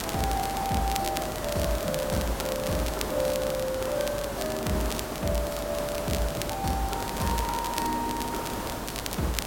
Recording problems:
hum; 50 Hz, harmonics up to 450 Hz, SNR 14 dB
background hiss; slope -6 dB per octave, SNR 3 dB
crackle; vinyl, SNR 7 dB

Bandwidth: 16.5 kHz